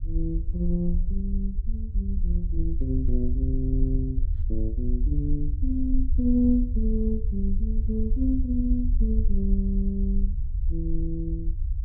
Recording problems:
low-frequency rumble; below 60 Hz, SNR -1 dB

